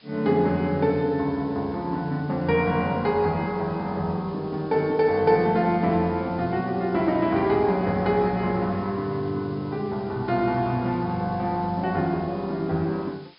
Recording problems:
low-pass filter; nothing above 5.2 kHz
hiss; SNR 28 dB

